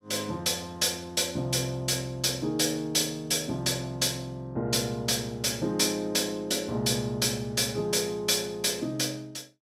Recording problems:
none

